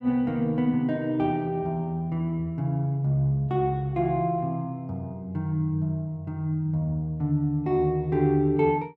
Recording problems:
none

